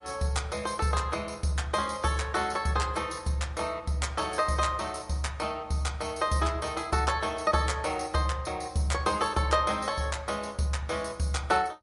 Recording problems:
lossy compression; MP3, log-spectral distance 4 dB, nothing above 11 kHz

